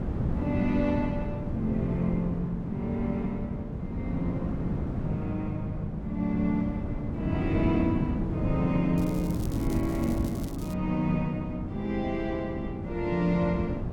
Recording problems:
wind on the microphone; below 240 Hz, SNR 3 dB
crackling; from 9 to 11 s; loose cable, SNR 18 dB

